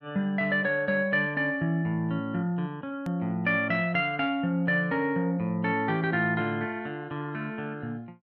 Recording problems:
edit click; at 3 s

